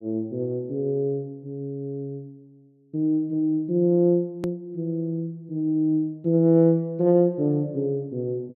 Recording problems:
edit click; at 4.5 s

